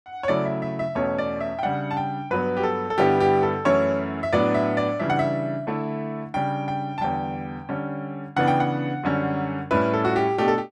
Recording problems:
none

